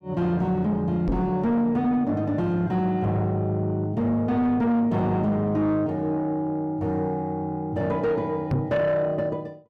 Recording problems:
distorted audio; soft clipping, signal-to-distortion ratio 11 dB
knock on the microphone; at 1 s and at 8.5 s; peak +3 dB vs average level

